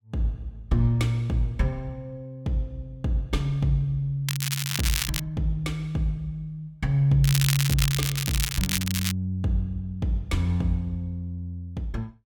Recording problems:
crackling; at 4.5 s and from 7 to 9 s; loose cable, SNR 2 dB

